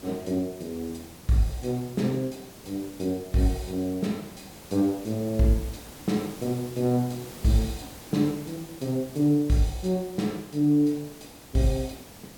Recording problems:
hiss; slope -4 dB per octave, SNR 17 dB

